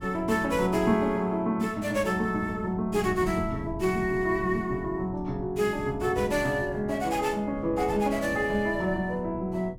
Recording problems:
wind on the microphone; below 190 Hz, SNR 14 dB

